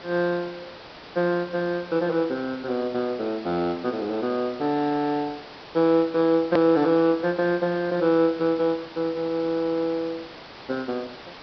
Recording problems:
treble cut off; nothing above 5.5 kHz
hiss; slope -4 dB per octave, SNR 17 dB
hard cut with a click; at 6.5 s

